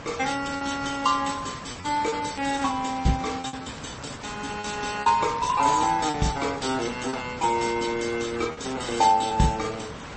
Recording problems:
codec artefacts; MP3, then MP3, log-spectral distance 7 dB, nothing above 8.2 kHz
background hiss; SNR 13 dB
lost packets; 6% of the sound replaced, filled with repeated pitch periods
crackle; from 1.5 to 8 s; loose cable, SNR 24 dB

